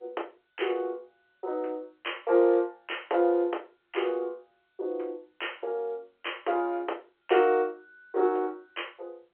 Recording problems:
telephone audio; 320 Hz to 3.2 kHz, G.711

